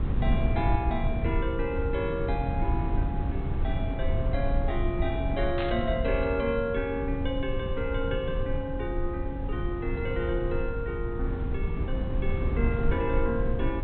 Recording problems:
treble missing; nothing above 4 kHz
low-frequency rumble; below 110 Hz, SNR -1 dB
static burst; at 5.5 s; peak -1 dB vs average level

